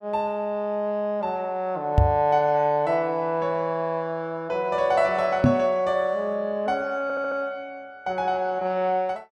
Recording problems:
knock on the microphone; at 2 s and at 5.5 s; peak +9 dB vs average level
stutter; at 7 s

